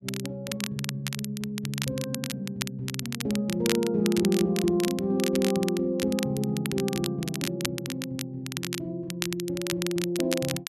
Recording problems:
crackle; vinyl, SNR 6 dB

